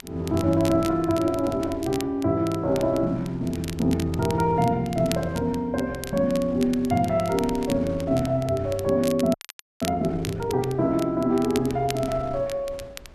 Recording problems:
wind on the microphone; below 290 Hz, SNR 21 dB
crackle; vinyl, SNR 16 dB
frozen audio; at 9.5 s

